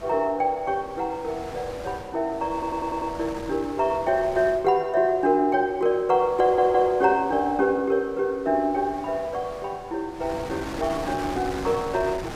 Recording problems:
wind noise; below 1.6 kHz, SNR 16 dB
audio stuttering; at 2.5 s and at 6.5 s

